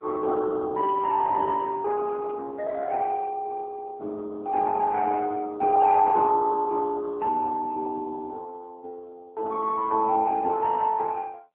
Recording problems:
phone line; 300 Hz to 2.6 kHz, AMR-NB

